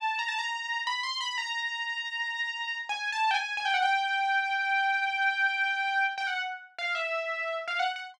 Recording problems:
none

